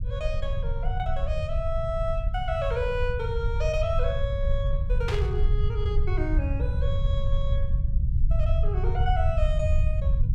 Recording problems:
rumble; below 80 Hz, SNR -4 dB
static burst; at 5 s; peak +2 dB vs average level

